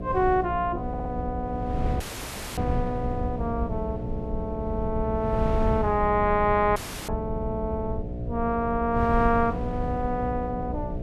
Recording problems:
hum; 60 Hz, harmonics up to 720 Hz, SNR 8 dB
low-frequency rumble; below 110 Hz, SNR 10 dB
wind noise; below 140 Hz, SNR 8 dB
stutter; at 1 s
audio cutting out; at 2 s for 0.5 s and at 7 s

